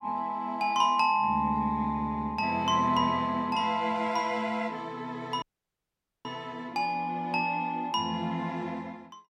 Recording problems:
audio cutting out; at 5.5 s for 1 s

